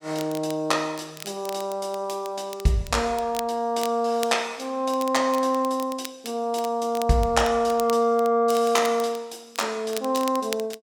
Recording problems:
crackle; vinyl, SNR 16 dB

